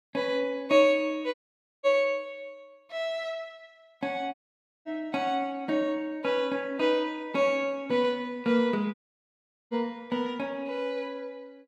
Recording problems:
audio cutting out; at 1.5 s, at 4.5 s for 0.5 s and at 9 s for 1 s

